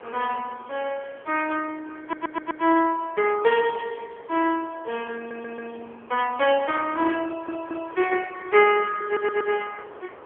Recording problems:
phone line; 320 Hz to 3.3 kHz, AMR-NB
wind on the microphone; below 1.1 kHz, SNR 22 dB
audio stuttering; 4 times, first at 2 s

